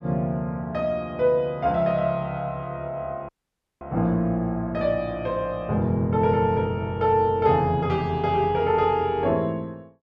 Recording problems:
dropout; at 3.5 s for 0.5 s

